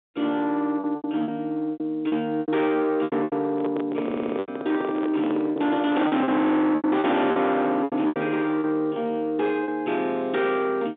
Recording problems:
phone line; 170 Hz to 3.7 kHz, G.711
distortion; soft clipping, signal-to-distortion ratio 6 dB
packet loss; 11% of the sound replaced, filled with repeated pitch periods
microphone handling noise; from 3.5 to 6 s; peak 0 dB vs average level
stutter; at 4 s

